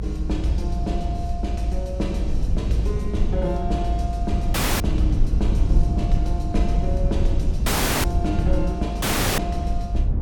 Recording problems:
rumble; below 74 Hz, SNR -4 dB
dropout; at 4.5 s, at 7.5 s and at 9 s

